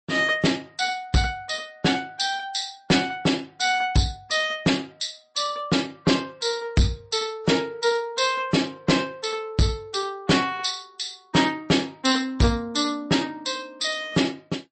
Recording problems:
lossy codec; MP3, log-spectral distance 4 dB, nothing above 8.2 kHz
distortion; hard clipping, signal-to-distortion ratio 11 dB

